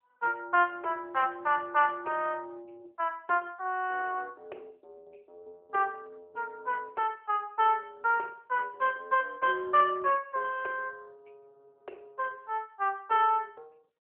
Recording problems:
phone line; 300 Hz to 3.1 kHz, AMR-NB

